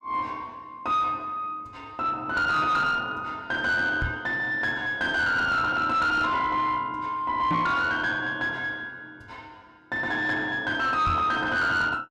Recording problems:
distortion; soft clipping, signal-to-distortion ratio 10 dB
microphone bump; at 4 s, at 7.5 s and at 11 s; peak +1 dB vs average level

